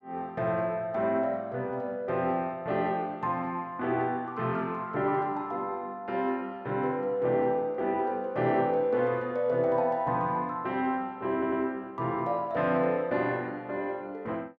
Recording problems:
stutter; at 11 s

